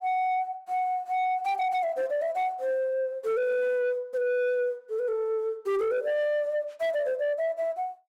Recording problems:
distorted audio; soft clipping, signal-to-distortion ratio 11 dB

